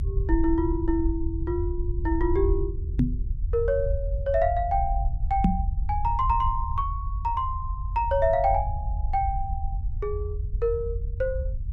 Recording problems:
low-frequency rumble; below 78 Hz, SNR 3 dB
microphone bump; at 3 s and at 5.5 s; peak +9 dB vs average level

